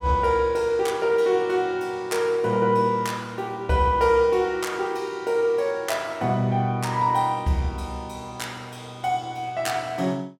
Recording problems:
none

